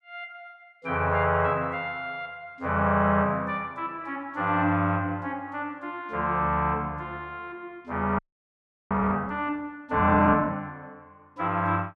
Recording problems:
frozen audio; at 8 s for 0.5 s

